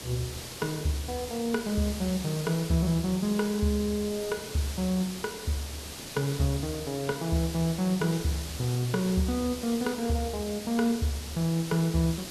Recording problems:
background hiss; SNR 10 dB

